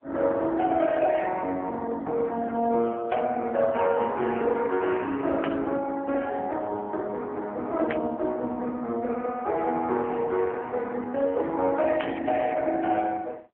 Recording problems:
phone line; 240 Hz to 3.8 kHz, AMR-NB
static burst; 4 times, first at 3 s; peak -4 dB vs average level

